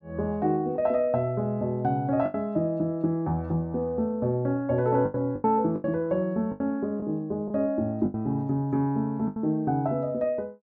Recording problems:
lost packets; 6% of the sound replaced, filled with the last packet

